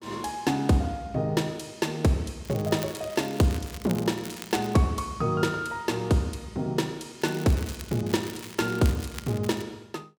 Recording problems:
crackle; from 2.5 to 4.5 s and from 7 to 9.5 s; loose cable, SNR 15 dB

